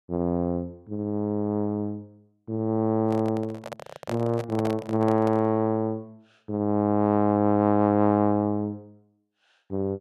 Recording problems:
handling noise; from 3 to 5.5 s; peak -4 dB vs average level

